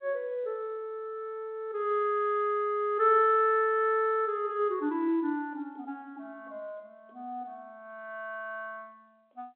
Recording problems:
telephone audio; 260 Hz to 3.9 kHz, G.711

